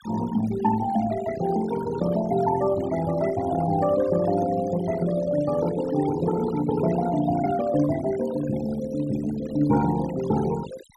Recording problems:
noise reduction artefacts; signal-to-artefact ratio 14 dB

